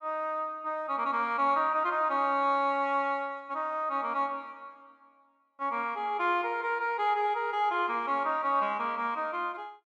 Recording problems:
none

